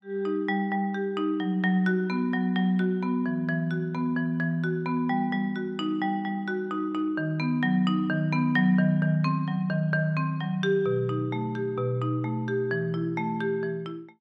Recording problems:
none

